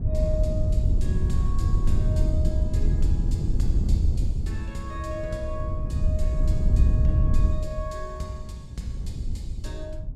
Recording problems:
wind on the microphone; below 88 Hz, SNR -11 dB

